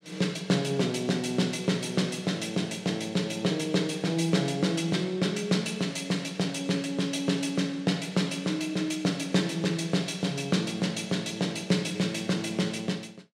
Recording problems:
none

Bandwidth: 16 kHz